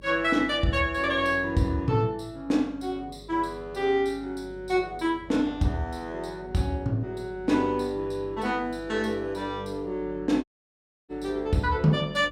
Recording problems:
hum; 50 Hz, harmonics up to 600 Hz, SNR 21 dB
dropout; at 10 s for 0.5 s

